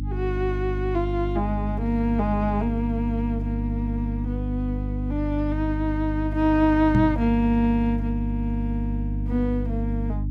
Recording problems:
hum; 50 Hz, harmonics up to 300 Hz, SNR 3 dB
microphone thump; at 7 s; peak +6 dB vs average level

